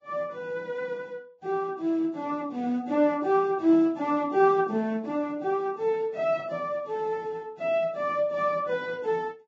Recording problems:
codec artefacts; Vorbis, log-spectral distance 2 dB

